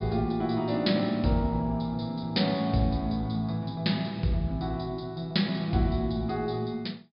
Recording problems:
low-pass filter; nothing above 5.1 kHz

